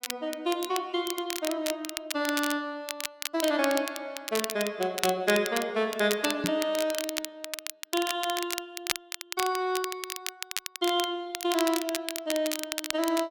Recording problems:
crackling; vinyl, SNR 5 dB
knock on the microphone; at 6.5 s; peak +3 dB vs average level

